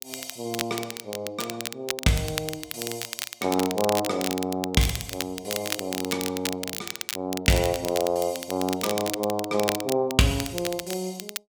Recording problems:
crackling; vinyl, SNR 5 dB

